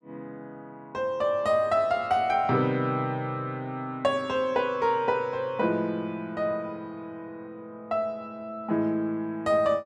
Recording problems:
none

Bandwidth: 12.5 kHz